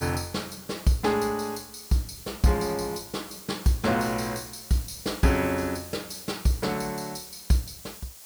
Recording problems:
hiss; SNR 15 dB

